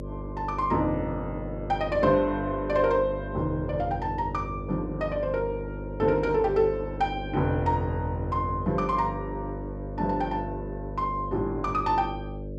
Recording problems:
hum; 50 Hz, harmonics up to 600 Hz, SNR 9 dB

